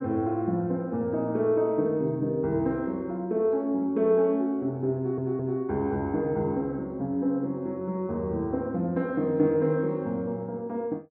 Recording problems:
audio stuttering; at 5 s

